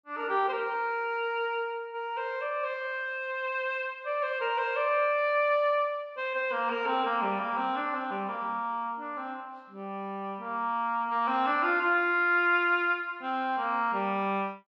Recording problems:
none

